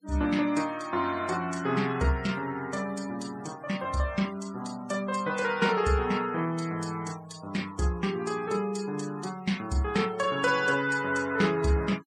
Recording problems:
denoising artefacts; signal-to-artefact ratio 19 dB

